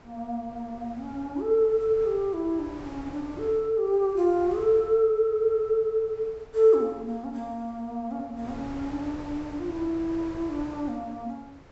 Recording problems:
low-pass filter; nothing above 7.7 kHz
wind on the microphone; below 870 Hz, SNR 19 dB

